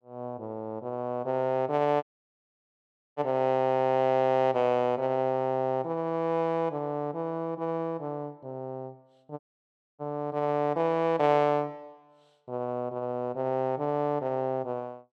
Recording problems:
audio cutting out; at 2 s for 1 s and at 9.5 s for 0.5 s

